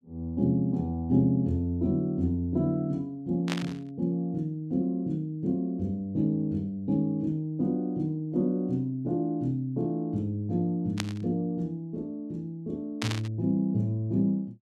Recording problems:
static burst; at 3.5 s, at 11 s and at 13 s; peak +1 dB vs average level

